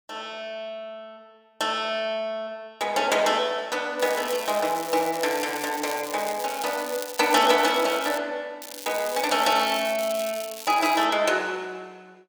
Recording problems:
crackle; from 4 to 8 s and from 8.5 to 11 s; loose cable, SNR 12 dB

